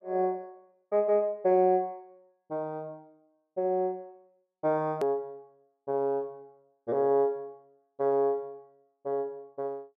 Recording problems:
click at an edit; at 5 s

